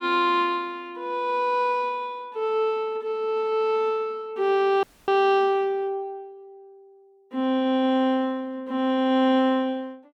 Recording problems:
audio cutting out; at 5 s

